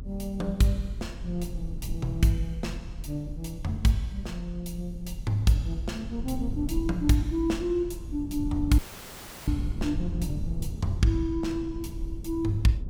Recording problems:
rumble; below 92 Hz, SNR 8 dB
audio cutting out; at 9 s for 0.5 s; filled with static

